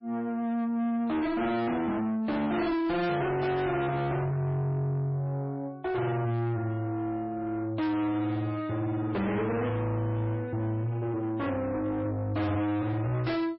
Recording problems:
lossy compression; MP3, log-spectral distance 2 dB, nothing above 5.2 kHz
distortion; soft clipping, signal-to-distortion ratio 7 dB

